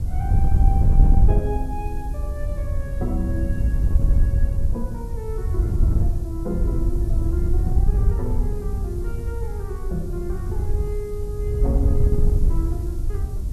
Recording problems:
hiss; SNR 19 dB
wind noise; below 80 Hz, SNR -10 dB

